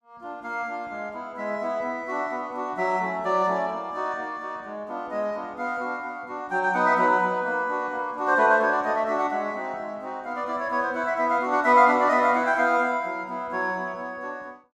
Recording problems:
none

